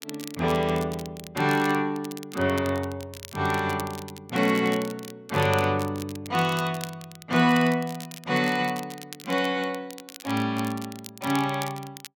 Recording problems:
crackle; vinyl, SNR 16 dB

